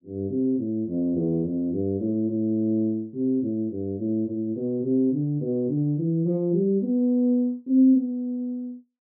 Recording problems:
none

